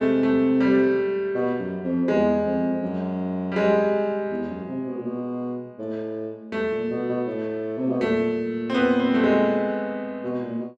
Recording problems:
none

